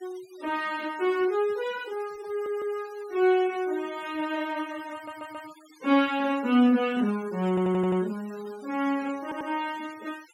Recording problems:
noise reduction artefacts; signal-to-artefact ratio 22 dB
stutter; 4 times, first at 2.5 s

